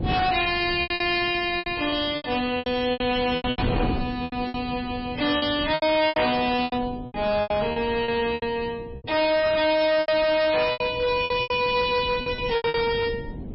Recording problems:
codec artefacts; MP3, log-spectral distance 4 dB, nothing above 5 kHz
distortion; hard clipping, signal-to-distortion ratio 7 dB
wind noise; below 330 Hz, SNR 13 dB
lost packets; 15% of the sound replaced, filled with repeated pitch periods

